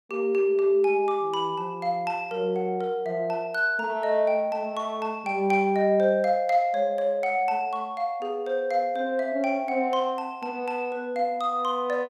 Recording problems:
none

